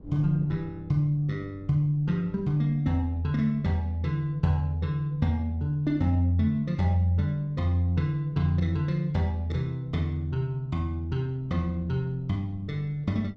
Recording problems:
wind noise; below 210 Hz, SNR 23 dB

